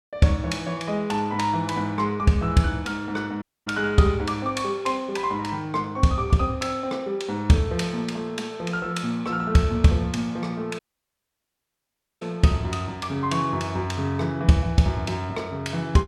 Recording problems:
audio cutting out; at 3.5 s and at 11 s for 1.5 s

